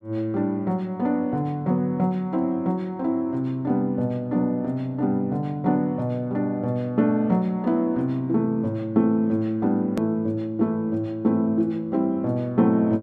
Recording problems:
click at an edit; at 10 s

